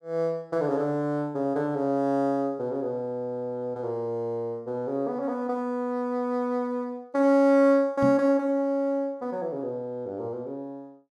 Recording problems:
microphone thump; at 8 s; peak 0 dB vs average level

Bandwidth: 13 kHz